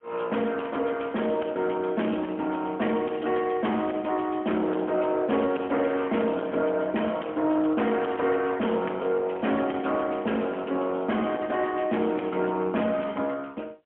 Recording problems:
telephone audio; 240 Hz to 3.3 kHz, AMR-NB, then MP3
distorted audio; soft clipping, signal-to-distortion ratio 12 dB

